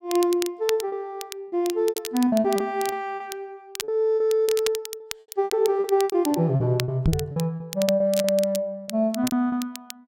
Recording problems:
crackling; vinyl, SNR 12 dB
lost packets; 13% of the sound replaced, filled with repeated pitch periods
microphone bump; at 7 s; peak +5 dB vs average level

